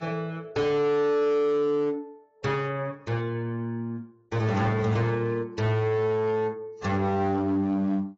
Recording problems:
lossy codec; AAC, then AAC, log-spectral distance 2 dB, nothing above 7.3 kHz
distorted audio; hard clipping, signal-to-distortion ratio 11 dB

